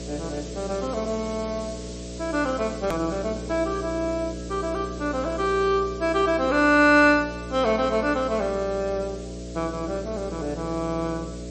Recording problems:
codec artefacts; MP3, log-spectral distance 10 dB, nothing above 14.7 kHz
electrical hum; 60 Hz, harmonics up to 660 Hz, SNR 11 dB
hiss; slope +1 dB per octave, SNR 19 dB
edit click; at 3 s

